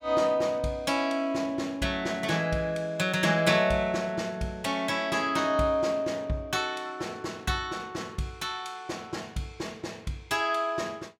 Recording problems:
none

